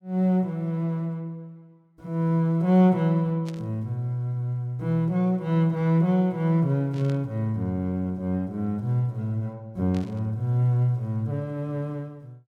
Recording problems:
burst of static; at 3.5 s, at 7 s and at 10 s; peak -15 dB vs average level

